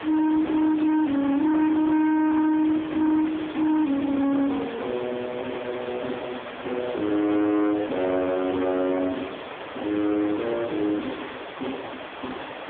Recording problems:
telephone audio; 800 Hz to 3.4 kHz, AMR-NB
distorted audio; hard clipping, signal-to-distortion ratio 7 dB
background hiss; SNR 13 dB

